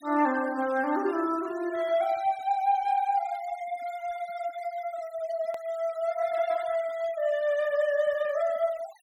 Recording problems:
noise reduction artefacts; signal-to-artefact ratio 21 dB
edit click; at 5.5 s

